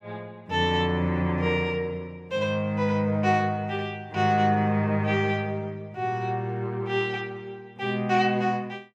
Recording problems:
none

